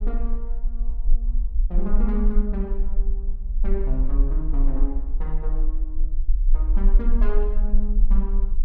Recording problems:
low-frequency rumble; below 38 Hz, strongest tone 22 Hz, SNR -7 dB

